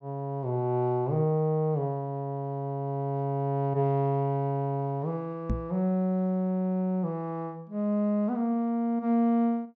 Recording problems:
treble missing; nothing above 8 kHz
microphone thump; at 5.5 s; peak +2 dB vs average level

